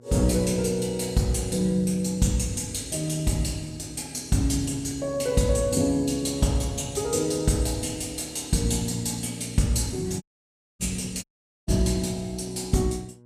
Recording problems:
hum; 60 Hz, harmonics up to 960 Hz, SNR 26 dB
dropout; at 10 s for 0.5 s and at 11 s

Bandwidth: 15 kHz